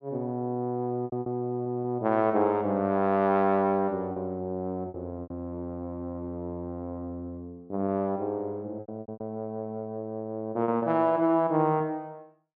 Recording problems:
lost packets; 6% of the sound replaced, filled with repeated pitch periods

